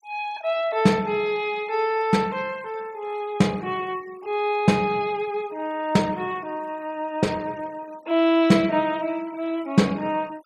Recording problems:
denoising artefacts; signal-to-artefact ratio 24 dB

